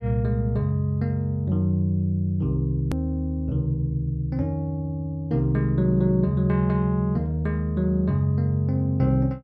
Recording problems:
click at an edit; at 3 s

